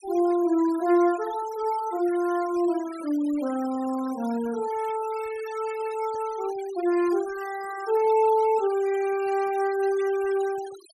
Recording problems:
denoising artefacts; signal-to-artefact ratio 19 dB

